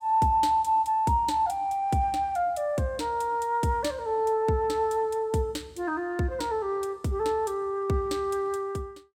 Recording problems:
none

